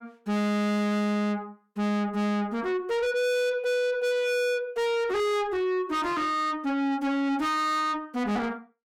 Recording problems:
distortion; soft clipping, signal-to-distortion ratio 7 dB

